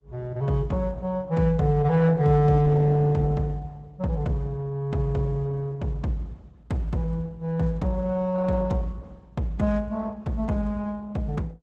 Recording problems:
lossy compression; Opus, log-spectral distance 2 dB

